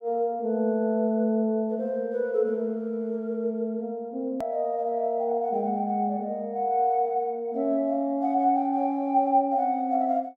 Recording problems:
click at an edit; at 4.5 s

